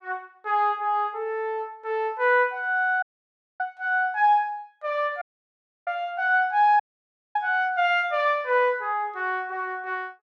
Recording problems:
audio cutting out; at 3 s for 0.5 s, at 5 s for 0.5 s and at 7 s for 0.5 s

